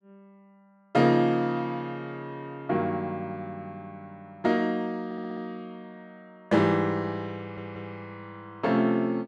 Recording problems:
audio stuttering; at 5 s and at 7.5 s

